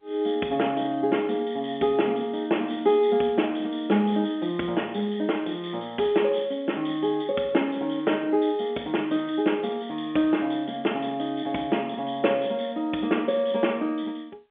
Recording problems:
phone line; 220 Hz to 3.5 kHz, G.711

